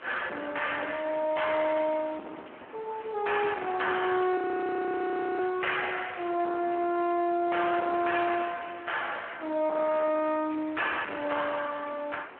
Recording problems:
phone line; 240 Hz to 3.1 kHz, Speex
distortion; soft clipping, signal-to-distortion ratio 10 dB
hiss; SNR 19 dB
frozen audio; at 4.5 s for 1 s

